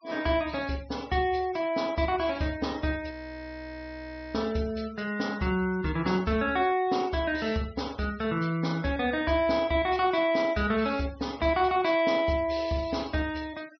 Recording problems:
treble missing; nothing above 5.8 kHz
noise reduction artefacts; signal-to-artefact ratio 22 dB
frozen audio; at 3 s for 1 s

